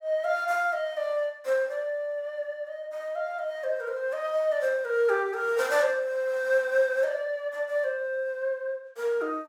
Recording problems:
none

